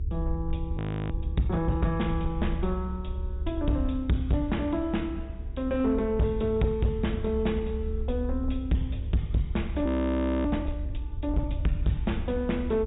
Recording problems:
treble missing; nothing above 4 kHz
distorted audio; hard clipping, uneven, signal-to-distortion ratio 10 dB
hum; 50 Hz, harmonics up to 450 Hz, SNR 20 dB
low-frequency rumble; below 70 Hz, SNR 6 dB
frozen audio; at 1 s and at 10 s for 0.5 s

